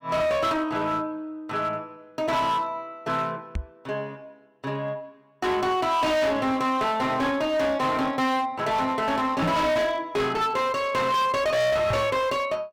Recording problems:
distortion; hard clipping, signal-to-distortion ratio 7 dB
microphone bump; at 3.5 s, at 9.5 s and at 12 s; peak +2 dB vs average level

